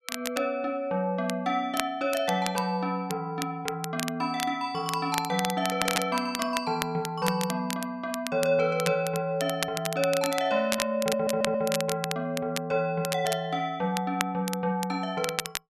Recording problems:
crackling; vinyl, SNR 7 dB
audio stuttering; at 5.5 s and at 11 s

